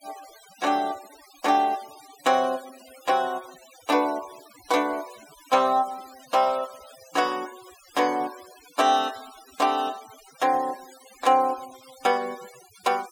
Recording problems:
noise reduction artefacts; signal-to-artefact ratio 20 dB

